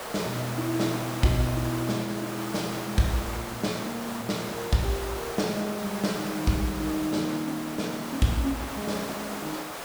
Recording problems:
hiss; SNR 6 dB

